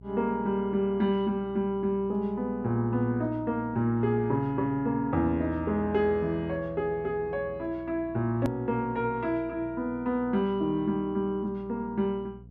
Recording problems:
hum; 60 Hz, harmonics up to 480 Hz, SNR 20 dB
click at an edit; at 8.5 s

